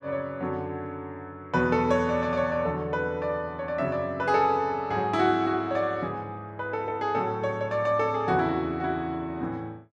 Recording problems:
none

